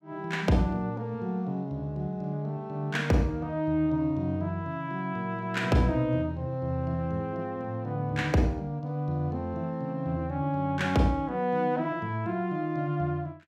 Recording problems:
none

